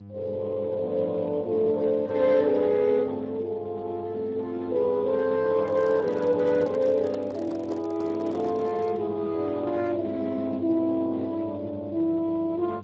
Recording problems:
codec artefacts; Speex, log-spectral distance 2 dB
hum; 50 Hz, harmonics up to 800 Hz, SNR 19 dB
microphone handling noise; from 5.5 to 9 s; peak -10 dB vs average level

